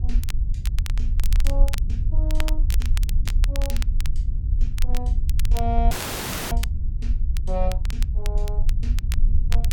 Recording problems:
low-frequency rumble; below 54 Hz, SNR -10 dB
crackling; vinyl, SNR 4 dB
audio cutting out; at 6 s for 0.5 s

